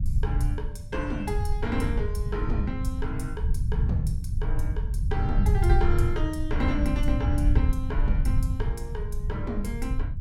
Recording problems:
rumble; below 88 Hz, SNR -5 dB

